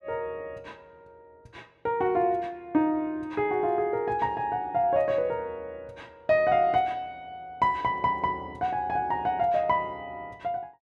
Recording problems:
none

